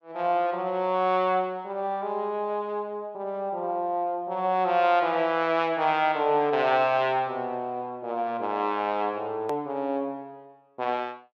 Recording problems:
hard cut with a click; at 9.5 s

